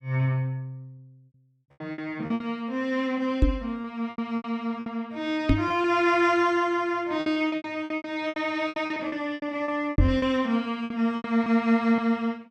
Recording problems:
lost packets; 13% of the sound replaced, filled with repeated pitch periods
knock on the microphone; at 3.5 s, at 5.5 s and at 10 s; peak +9 dB vs average level

